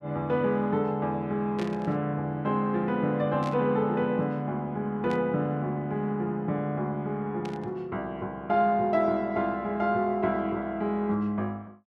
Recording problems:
static burst; 4 times, first at 1.5 s; peak -9 dB vs average level

